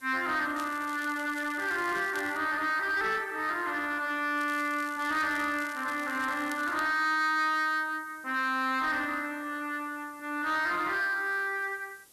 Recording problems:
distortion; soft clipping, signal-to-distortion ratio 12 dB
background hiss; SNR 26 dB
crackle; from 0.5 to 2.5 s and from 4.5 to 7 s; loose cable, SNR 19 dB

